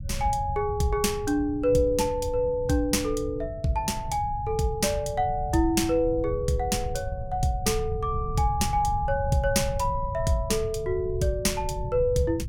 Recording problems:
rumble; below 120 Hz, SNR 9 dB

